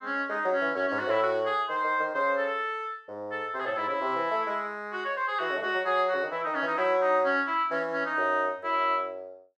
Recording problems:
none

